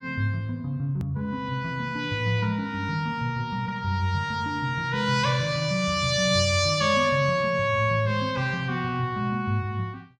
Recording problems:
click at an edit; at 1 s

